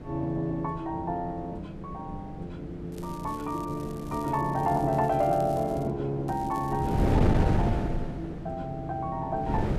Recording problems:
wind on the microphone; below 310 Hz, SNR 2 dB
crackling; from 3 to 5 s, from 5 to 6 s and at 6.5 s; loose cable, SNR 22 dB

